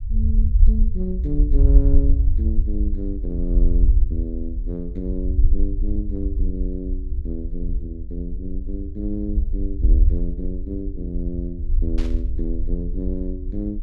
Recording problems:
rumble; below 58 Hz, SNR -7 dB
burst of static; at 12 s; peak -5 dB vs average level

